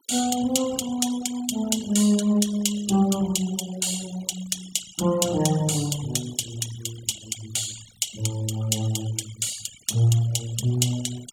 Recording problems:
denoising artefacts; signal-to-artefact ratio 14 dB

